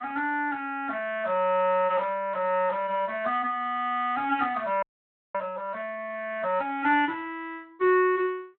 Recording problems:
phone line; 300 Hz to 3.3 kHz, Speex
audio freezing; at 5 s for 0.5 s

